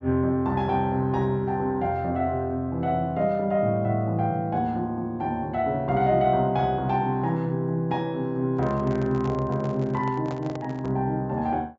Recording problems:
treble missing; nothing above 8 kHz
microphone handling noise; from 8.5 to 11 s; peak -9 dB vs average level

